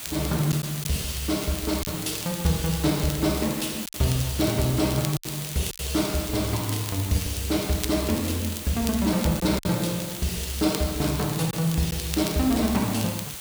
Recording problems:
background hiss; slope 0 dB per octave, SNR 8 dB
crackle; vinyl, SNR 13 dB
lost packets; 3% of the sound replaced, filled with silence

